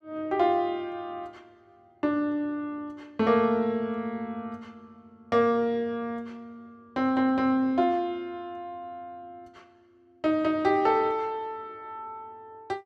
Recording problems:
none

